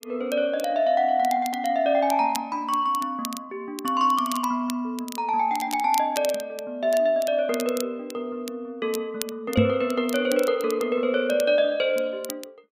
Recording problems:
crackle; vinyl, SNR 15 dB
knock on the microphone; at 9.5 s; peak +7 dB vs average level

